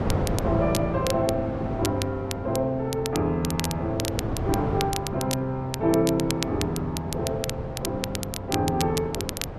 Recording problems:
wind on the microphone; below 520 Hz, SNR 6 dB
crackle; vinyl, SNR 8 dB

